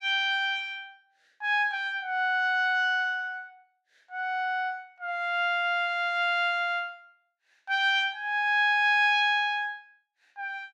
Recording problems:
none

